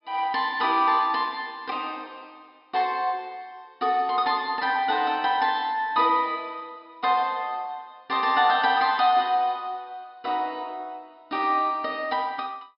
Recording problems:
low-pass filter; nothing above 5.5 kHz

